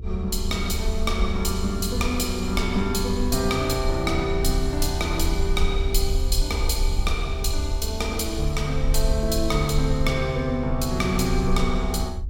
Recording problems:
electrical hum; 50 Hz, harmonics up to 500 Hz, SNR 21 dB
low-frequency rumble; below 74 Hz, SNR 4 dB

